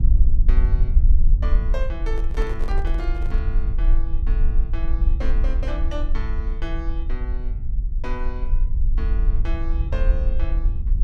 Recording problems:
low-frequency rumble; below 48 Hz, strongest tone 24 Hz, SNR -11 dB
microphone handling noise; from 2 to 3.5 s; peak +1 dB vs average level

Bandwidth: 14 kHz